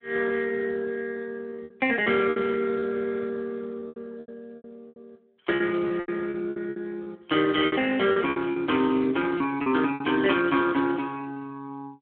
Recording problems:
telephone audio; 280 Hz to 3.3 kHz, Speex
packet loss; 10% of the sound replaced, filled with repeated pitch periods

